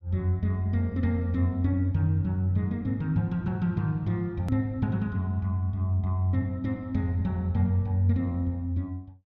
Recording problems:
hard cut with a click; at 4.5 s

